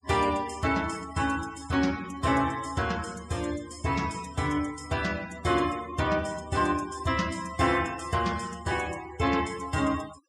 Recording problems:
noise reduction artefacts; signal-to-artefact ratio 17 dB

